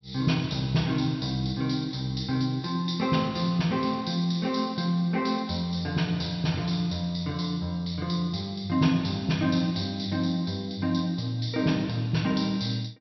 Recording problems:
treble cut off; nothing above 5.7 kHz

